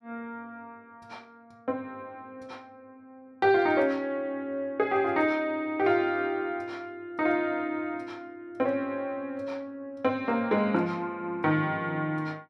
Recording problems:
none

